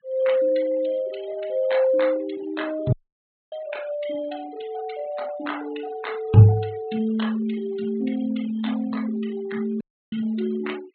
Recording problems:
low-pass filter; nothing above 4.1 kHz
noise reduction artefacts; signal-to-artefact ratio 20 dB
audio cutting out; at 3 s for 0.5 s and at 10 s

